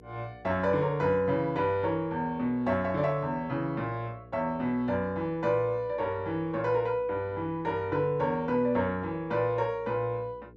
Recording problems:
hum; 60 Hz, harmonics up to 480 Hz, SNR 24 dB

